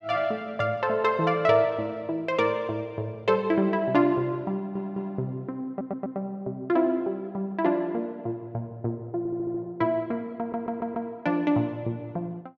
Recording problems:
stutter; 4 times, first at 4.5 s

